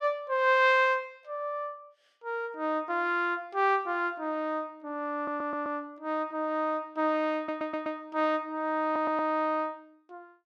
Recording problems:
stutter; at 5 s, at 7.5 s and at 9 s

